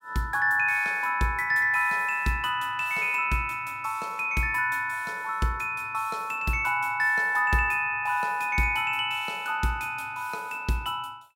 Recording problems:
none

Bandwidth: 17 kHz